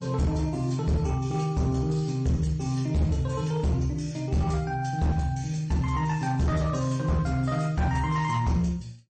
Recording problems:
codec artefacts; MP3, log-spectral distance 2 dB, nothing above 8.2 kHz
distorted audio; hard clipping, uneven, signal-to-distortion ratio 11 dB

